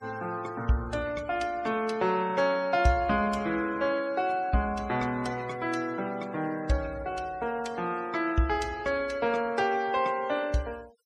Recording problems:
denoising artefacts; signal-to-artefact ratio 22 dB

